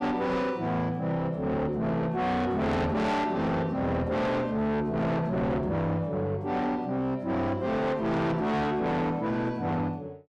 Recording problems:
distortion; soft clipping, signal-to-distortion ratio 6 dB

